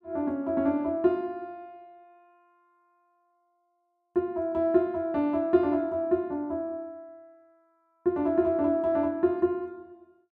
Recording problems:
none

